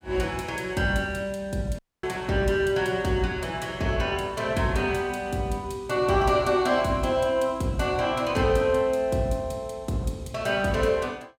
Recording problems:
audio cutting out; at 2 s

